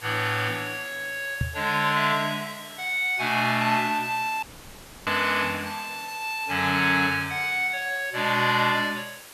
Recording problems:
background hiss; slope -1 dB per octave, SNR 18 dB
microphone thump; at 1.5 s; peak +1 dB vs average level
dropout; at 4.5 s for 0.5 s

